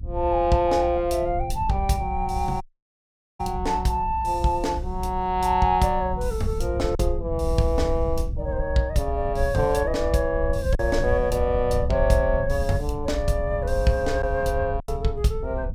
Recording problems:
rumble; below 78 Hz, SNR 6 dB
packet loss; 1.1% of the sound replaced, filled with silence
dropout; at 2.5 s for 1 s

